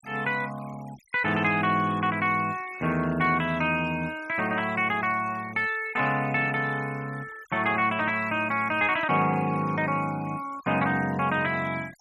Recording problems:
denoising artefacts; signal-to-artefact ratio 22 dB

